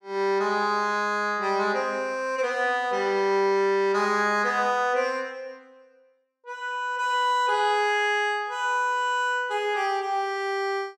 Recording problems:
none

